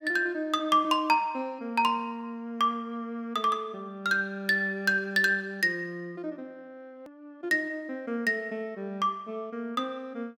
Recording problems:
click at an edit; at 7 s

